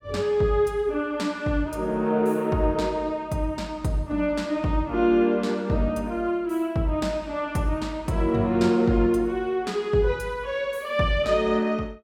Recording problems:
none

